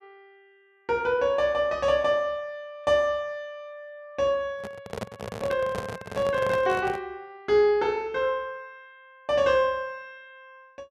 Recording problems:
microphone handling noise; from 4.5 to 7 s; peak -3 dB vs average level

